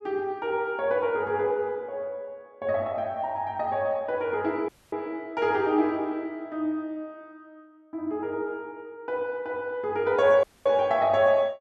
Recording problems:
dropout; at 4.5 s and at 10 s

